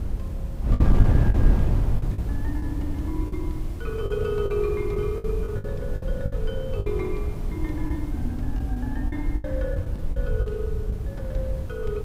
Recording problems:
hum; 50 Hz, harmonics up to 350 Hz, SNR 16 dB
background hiss; slope 0 dB per octave, SNR 21 dB
low-frequency rumble; below 72 Hz, SNR 4 dB
wind noise; below 110 Hz, SNR -4 dB
lost packets; 9% of the sound replaced, filled with the last packet

